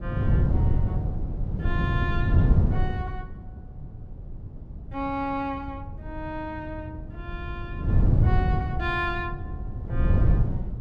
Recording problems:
wind on the microphone; below 130 Hz, SNR -8 dB

